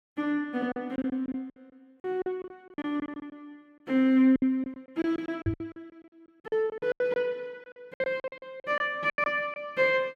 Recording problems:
packet loss; 17% of the sound replaced, filled with silence
microphone bump; at 5.5 s; peak +2 dB vs average level

